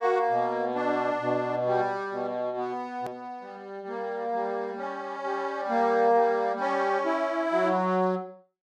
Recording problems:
click at an edit; at 3 s

